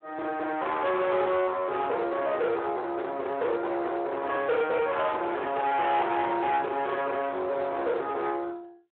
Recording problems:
telephone audio; 340 Hz to 3.4 kHz, Speex
distorted audio; soft clipping, signal-to-distortion ratio 7 dB

